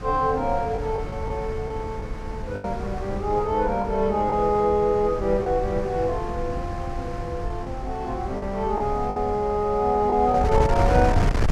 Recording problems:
wind noise; below 160 Hz, SNR 6 dB
packet loss; 4% of the sound replaced, filled with the last packet

